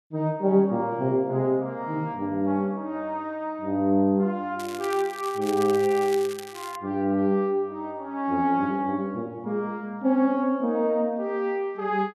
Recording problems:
crackle; from 4.5 to 7 s; loose cable, SNR 16 dB

